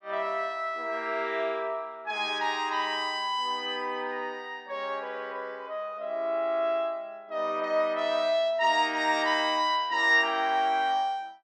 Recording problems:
none

